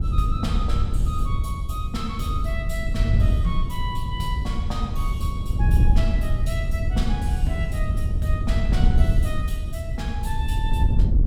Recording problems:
wind noise; below 88 Hz, SNR -8 dB

